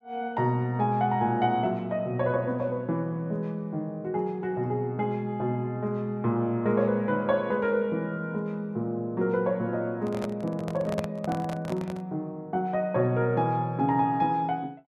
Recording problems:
microphone handling noise; from 10 to 12 s; peak 0 dB vs average level

